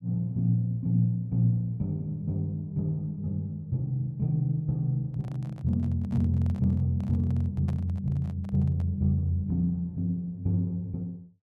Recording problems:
handling noise; from 5 to 9 s; peak -12 dB vs average level

